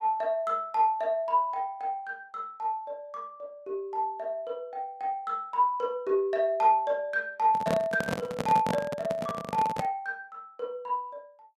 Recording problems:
handling noise; from 7.5 to 10 s; peak +2 dB vs average level

